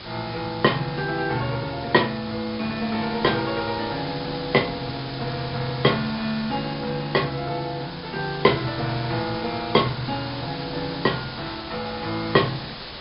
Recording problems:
treble cut off; nothing above 5.5 kHz
hiss; SNR 10 dB

